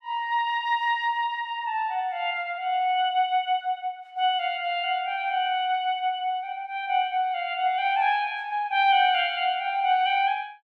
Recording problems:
none

